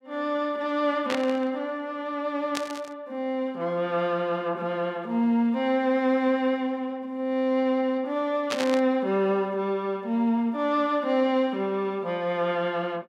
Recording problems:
static burst; at 1 s, at 2.5 s and at 8.5 s; peak +1 dB vs average level

